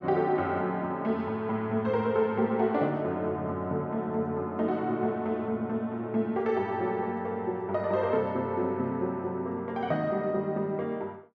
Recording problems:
none

